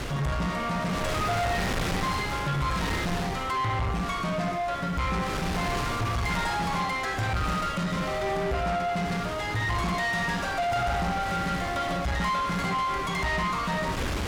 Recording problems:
distortion; soft clipping, signal-to-distortion ratio 8 dB
wind noise; below 2.1 kHz, SNR 5 dB

